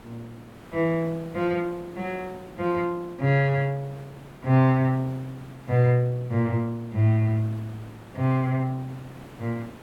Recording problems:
hiss; slope -7 dB per octave, SNR 21 dB

